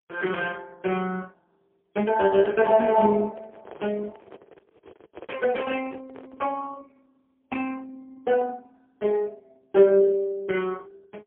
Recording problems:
phone line; 170 Hz to 3.1 kHz, AMR-NB, then MP3
handling noise; from 3 to 6.5 s; peak -9 dB vs average level

